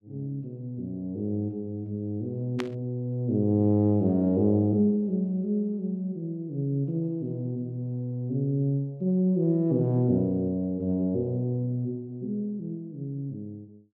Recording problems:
static burst; at 2.5 s; peak -4 dB vs average level

